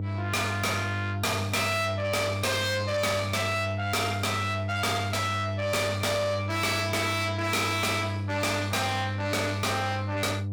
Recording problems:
distortion; soft clipping, signal-to-distortion ratio 6 dB
hum; 50 Hz, harmonics up to 500 Hz, SNR 5 dB

